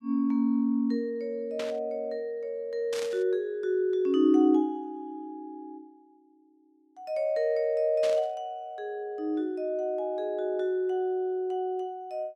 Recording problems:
static burst; at 1.5 s, at 3 s and at 8 s; peak -6 dB vs average level

